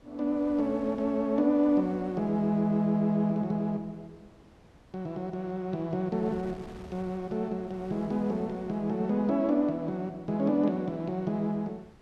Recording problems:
wind noise; below 710 Hz, SNR 23 dB

